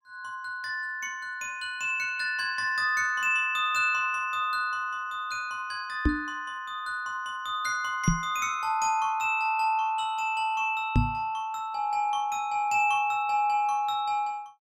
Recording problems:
microphone bump; at 6 s, at 8 s and at 11 s; peak +8 dB vs average level

